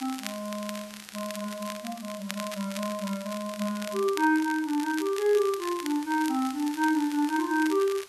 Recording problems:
hiss; slope +1 dB per octave, SNR 19 dB
crackling; vinyl, SNR 13 dB

